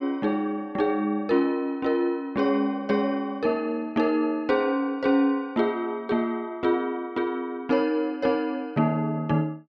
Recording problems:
none

